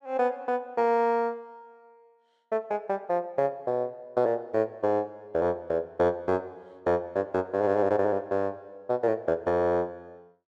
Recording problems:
none

